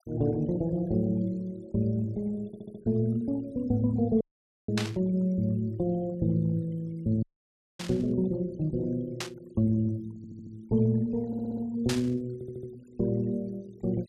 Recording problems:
denoising artefacts; signal-to-artefact ratio 26 dB
stutter; 4 times, first at 2.5 s
audio cutting out; at 4 s and at 7 s for 0.5 s
static burst; 4 times, first at 5 s; peak +1 dB vs average level

